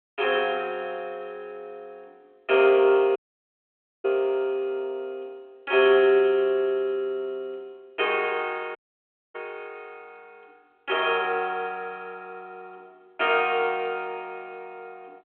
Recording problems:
telephone audio; 280 Hz to 3.3 kHz, G.726
audio cutting out; at 3 s for 1 s and at 9 s for 0.5 s

